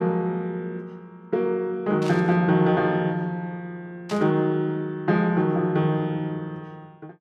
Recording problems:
burst of static; at 2 s and at 4 s; peak -9 dB vs average level

